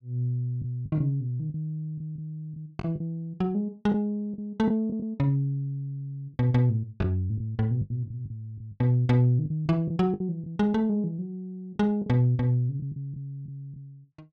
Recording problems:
packet loss; 7% of the sound replaced, filled with the last packet

